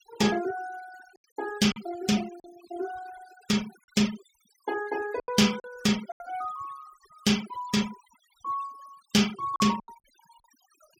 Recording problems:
denoising artefacts; signal-to-artefact ratio 16 dB
lost packets; 5% of the sound replaced, filled with silence

